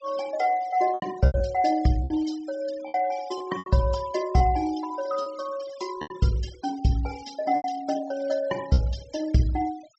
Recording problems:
treble cut off; nothing above 7.7 kHz
denoising artefacts; signal-to-artefact ratio 19 dB
lost packets; 7% of the sound replaced, filled with repeated pitch periods

